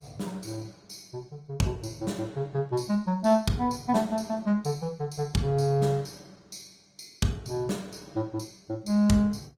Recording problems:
lossy compression; Opus, log-spectral distance 3 dB

